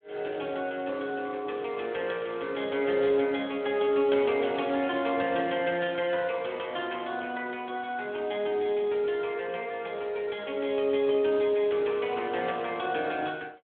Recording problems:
telephone audio; 260 Hz to 3.4 kHz, Speex

